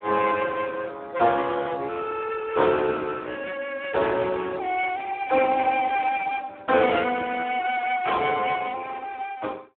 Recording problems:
phone line; 260 Hz to 2.3 kHz, Speex

